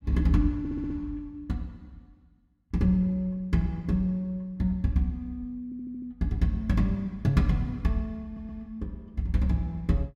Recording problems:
audio stuttering; at 0.5 s, at 5.5 s and at 8 s

